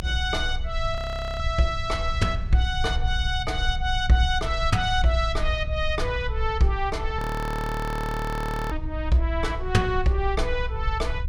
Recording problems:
low-frequency rumble; below 66 Hz, strongest tone 22 Hz, SNR 5 dB
audio freezing; at 1 s and at 7 s for 1.5 s

